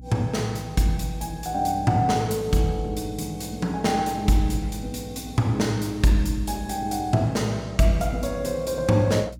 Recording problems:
hum; 60 Hz, harmonics up to 300 Hz, SNR 18 dB

